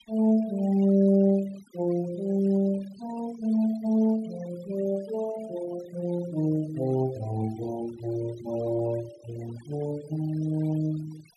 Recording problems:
noise reduction artefacts; signal-to-artefact ratio 20 dB

